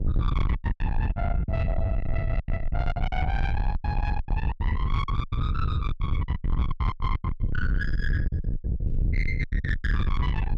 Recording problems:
distorted audio; soft clipping, signal-to-distortion ratio 7 dB
hum; 50 Hz, harmonics up to 500 Hz, SNR 12 dB
low-frequency rumble; below 100 Hz, SNR -5 dB
lost packets; 16% of the sound replaced, filled with silence

